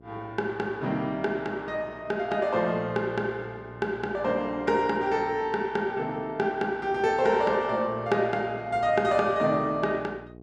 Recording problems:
mains hum; 60 Hz, harmonics up to 840 Hz, SNR 23 dB

